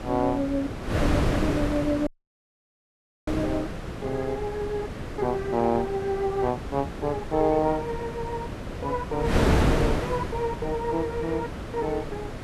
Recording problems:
wind on the microphone; below 590 Hz, SNR 2 dB
audio cutting out; at 2 s for 1 s

